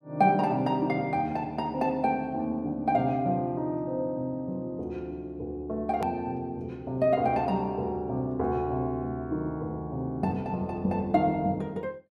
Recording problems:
hard cut with a click; at 6 s

